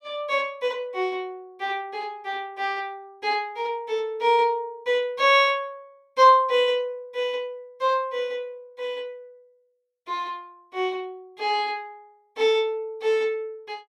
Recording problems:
none

